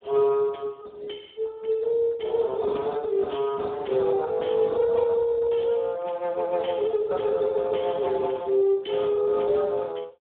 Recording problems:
phone line; 240 Hz to 2.2 kHz, Speex

